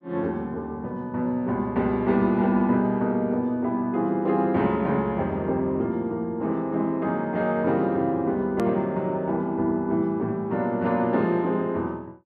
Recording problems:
edit click; at 8.5 s

